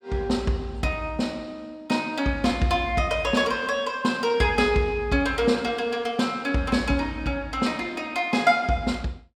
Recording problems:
none

